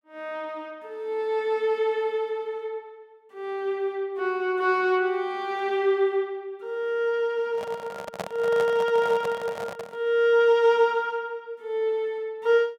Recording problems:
microphone handling noise; from 7.5 to 10 s; peak -2 dB vs average level

